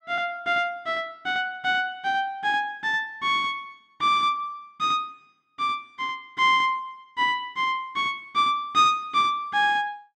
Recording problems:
none

